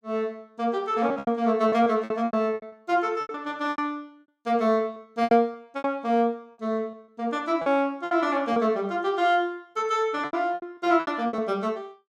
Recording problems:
packet loss; 12% of the sound replaced, filled with repeated pitch periods

